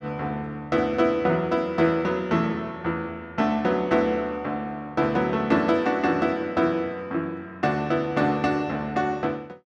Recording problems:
none

